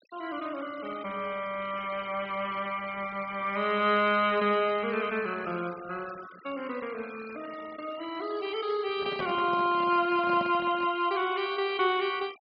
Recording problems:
treble missing; nothing above 5.5 kHz
noise reduction artefacts; signal-to-artefact ratio 19 dB
microphone handling noise; from 9 to 11 s; peak -5 dB vs average level

